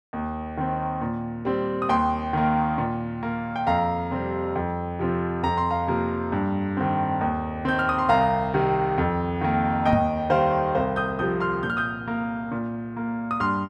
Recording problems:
microphone bump; at 10 s; peak +3 dB vs average level

